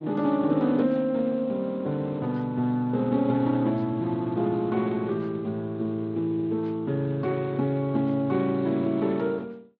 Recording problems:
lossy codec; Speex, log-spectral distance 2 dB

